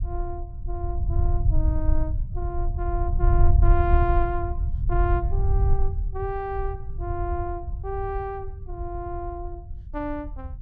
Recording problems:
rumble; below 74 Hz, SNR -5 dB

